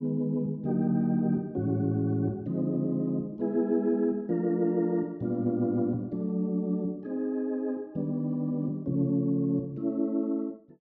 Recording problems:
none

